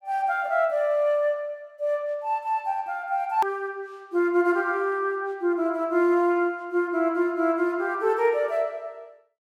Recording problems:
edit click; at 3.5 s

